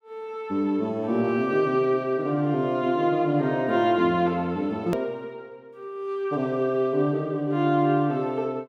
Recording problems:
click at an edit; at 5 s

